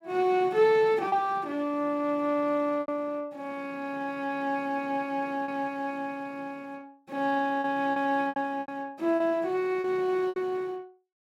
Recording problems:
packet loss; 5% of the sound replaced, filled with repeated pitch periods

